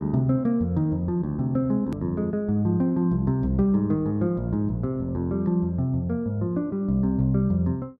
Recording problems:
hard cut with a click; at 2 s

